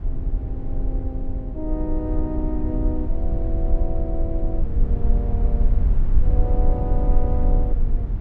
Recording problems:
rumble; below 54 Hz, SNR -7 dB

